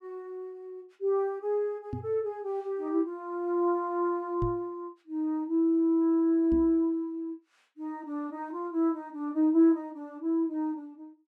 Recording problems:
microphone bump; at 2 s, at 4.5 s and at 6.5 s; peak -1 dB vs average level

